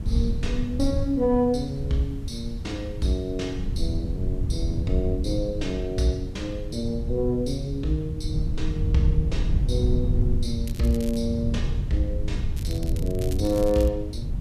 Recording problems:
background hiss; slope -3 dB per octave, SNR 28 dB
low-frequency rumble; below 110 Hz, SNR 2 dB
crackling; at 11 s and from 13 to 14 s; loose cable, SNR 16 dB

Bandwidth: 14 kHz